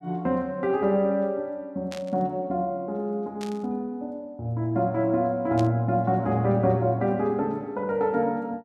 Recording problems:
static burst; at 2 s, at 3.5 s and at 5.5 s; peak -9 dB vs average level

